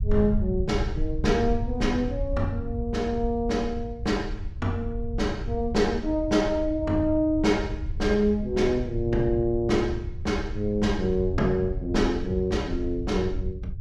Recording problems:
rumble; below 84 Hz, SNR 7 dB

